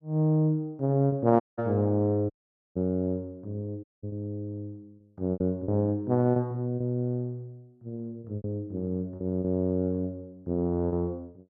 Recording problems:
packet loss; 5% of the sound replaced, filled with repeated pitch periods
dropout; at 1.5 s, at 2.5 s and at 4 s

